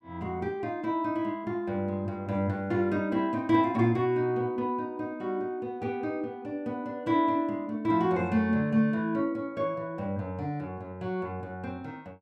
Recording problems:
none

